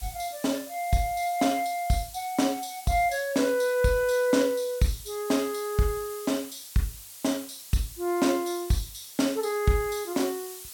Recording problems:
hiss; slope +3 dB per octave, SNR 14 dB

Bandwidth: 17 kHz